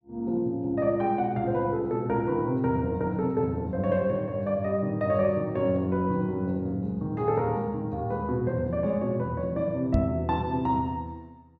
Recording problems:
microphone bump; at 10 s; peak +6 dB vs average level

